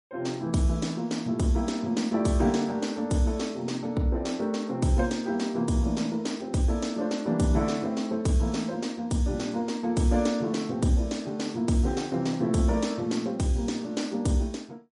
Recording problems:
lossy compression; MP3, log-spectral distance 2 dB, nothing above 10.4 kHz

